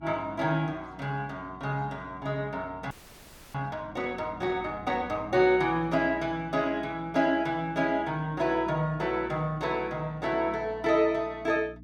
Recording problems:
hum; 60 Hz, harmonics up to 300 Hz, SNR 20 dB
audio freezing; at 3 s for 0.5 s

